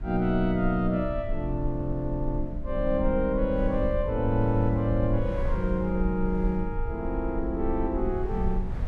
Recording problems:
low-frequency rumble; below 56 Hz, SNR 7 dB
wind on the microphone; below 260 Hz, SNR 17 dB

